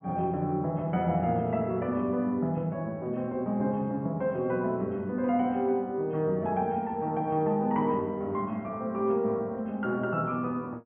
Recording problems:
low-pass filter; nothing above 3.2 kHz

